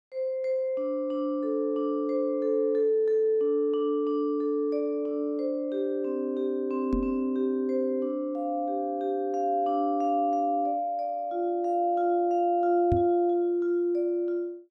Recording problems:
knock on the microphone; at 7 s and at 13 s; peak +2 dB vs average level

